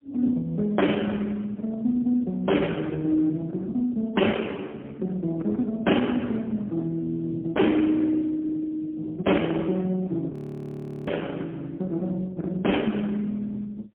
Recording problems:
telephone audio; 170 Hz to 3.3 kHz, AMR-NB, then MP3
distortion; hard clipping, signal-to-distortion ratio 10 dB
frozen audio; at 10 s for 0.5 s

